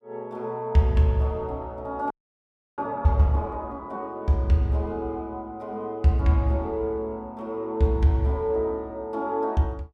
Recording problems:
frozen audio; at 2 s for 0.5 s

